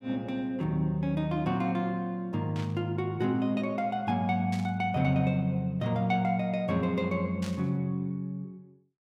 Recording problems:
static burst; at 2.5 s, at 4.5 s and at 7.5 s; peak -9 dB vs average level

